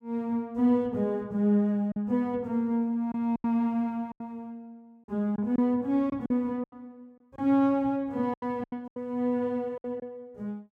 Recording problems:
lost packets; 7% of the sound replaced, filled with silence

